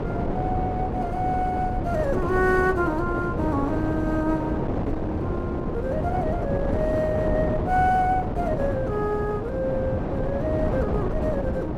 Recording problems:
wind noise; below 480 Hz, SNR 1 dB

